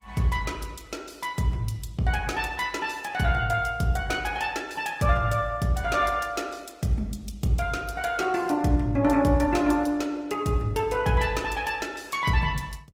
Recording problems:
codec artefacts; Opus, log-spectral distance 3 dB

